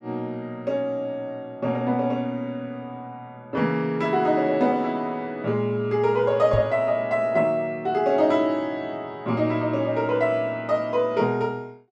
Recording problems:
knock on the microphone; at 6.5 s; peak 0 dB vs average level

